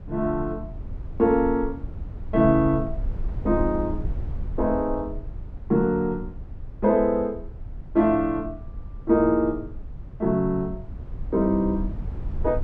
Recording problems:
low-frequency rumble; below 80 Hz, SNR 12 dB

